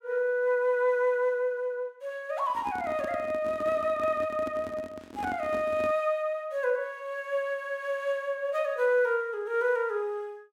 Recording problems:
microphone handling noise; from 2.5 to 6 s; peak -6 dB vs average level

